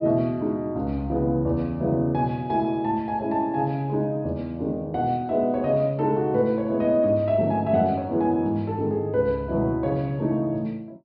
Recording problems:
low-pass filter; nothing above 5.5 kHz

